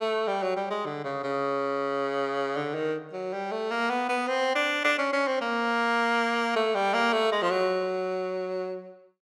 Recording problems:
none

